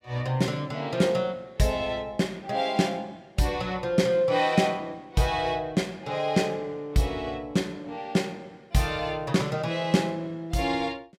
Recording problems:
none

